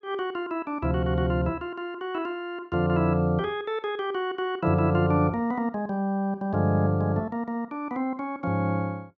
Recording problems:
none

